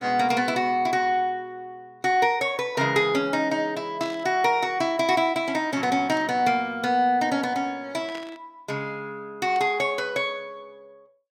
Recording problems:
static burst; 4 times, first at 4 s; peak -12 dB vs average level

